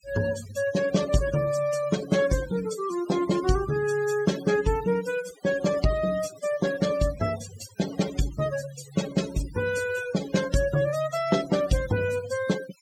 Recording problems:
noise reduction artefacts; signal-to-artefact ratio 13 dB

